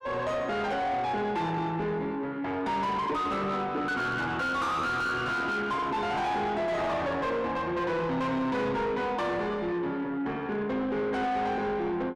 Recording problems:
distortion; soft clipping, signal-to-distortion ratio 8 dB

